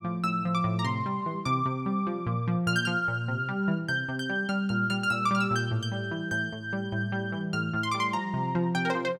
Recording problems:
none

